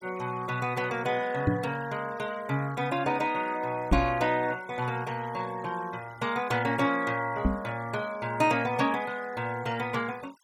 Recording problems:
noise reduction artefacts; signal-to-artefact ratio 20 dB
knock on the microphone; at 1.5 s, at 4 s and at 7.5 s; peak +8 dB vs average level

